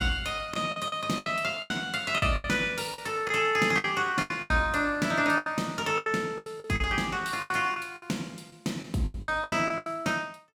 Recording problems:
packet loss; 15% of the sound replaced, filled with the last packet

